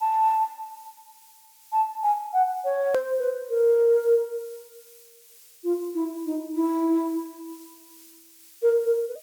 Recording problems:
background hiss; slope +4 dB per octave, SNR 25 dB
hard cut with a click; at 3 s

